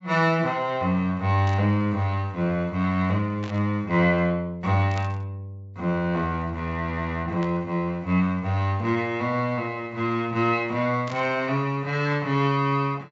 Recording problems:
treble cut off; nothing above 8 kHz
burst of static; 5 times, first at 1.5 s; peak -11 dB vs average level

